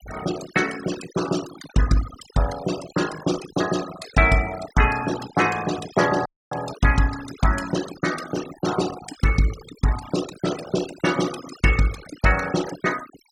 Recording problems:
noise reduction artefacts; signal-to-artefact ratio 11 dB
audio cutting out; at 6.5 s

